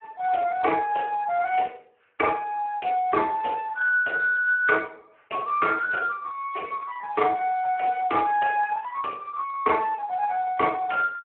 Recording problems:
phone line; 280 Hz to 2.1 kHz, Speex

